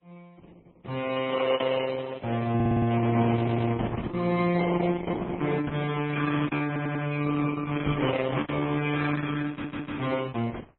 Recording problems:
lossy codec; Opus, then MP3, log-spectral distance 4 dB
lost packets; 5% of the sound replaced, filled with repeated pitch periods
stutter; 4 times, first at 2.5 s
knock on the microphone; at 8 s; peak +2 dB vs average level

